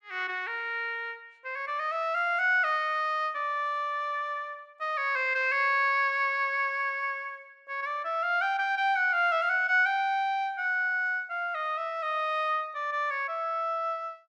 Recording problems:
none

